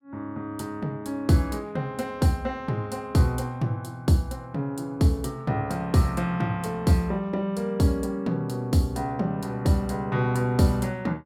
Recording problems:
none

